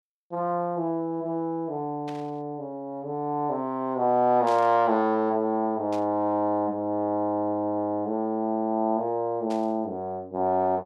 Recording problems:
static burst; 4 times, first at 2 s; peak -11 dB vs average level

